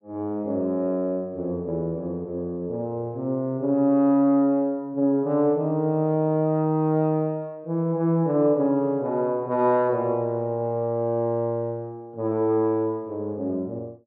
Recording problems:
none

